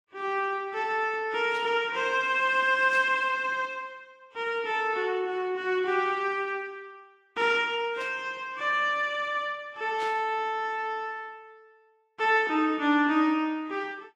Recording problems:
lossy codec; Vorbis, log-spectral distance 2 dB
static burst; 4 times, first at 1.5 s; peak -11 dB vs average level

